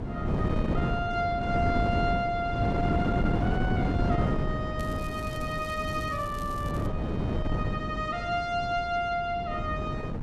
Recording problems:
wind noise; below 310 Hz, SNR -1 dB
crackle; from 5 to 7 s; loose cable, SNR 19 dB

